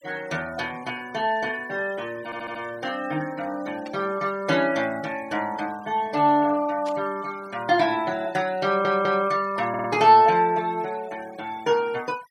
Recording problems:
denoising artefacts; signal-to-artefact ratio 22 dB
stutter; at 2.5 s, at 8.5 s and at 9.5 s
burst of static; at 4 s and at 7 s; peak -13 dB vs average level

